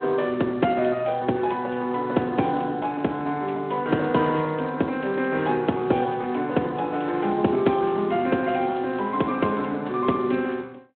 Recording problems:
telephone audio; 170 Hz to 3.6 kHz, Speex

